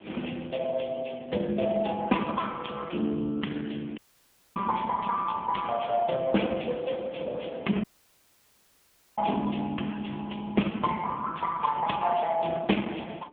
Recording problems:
phone line; 150 Hz to 3.5 kHz, AMR-NB
wind noise; below 600 Hz, SNR 18 dB
audio cutting out; at 4 s for 0.5 s and at 8 s for 1.5 s

